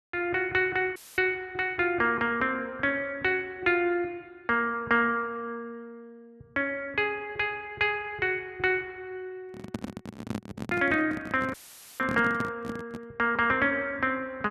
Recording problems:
audio cutting out; at 1 s and at 12 s; filled with static
handling noise; from 9.5 to 13 s; peak -1 dB vs average level

